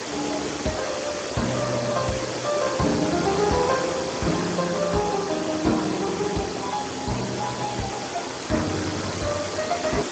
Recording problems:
lossy compression; Speex, log-spectral distance 14 dB
hiss; SNR 5 dB

